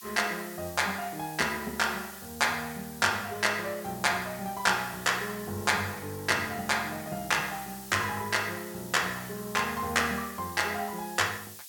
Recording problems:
background hiss; SNR 14 dB

